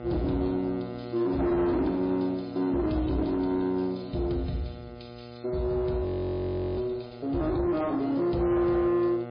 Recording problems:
lossy compression; MP3, log-spectral distance 4 dB
distorted audio; soft clipping, signal-to-distortion ratio 12 dB
hum; 60 Hz, harmonics up to 2.2 kHz, SNR 14 dB
audio freezing; at 6 s for 0.5 s

